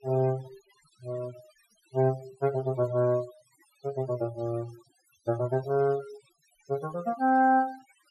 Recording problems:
noise reduction artefacts; signal-to-artefact ratio 19 dB

